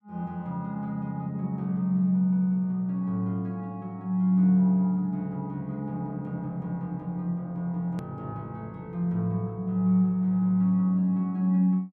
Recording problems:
edit click; at 8 s

